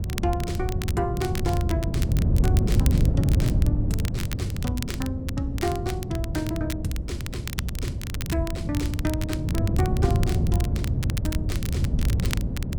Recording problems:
wind noise; below 150 Hz, SNR -5 dB
crackling; vinyl, SNR 7 dB

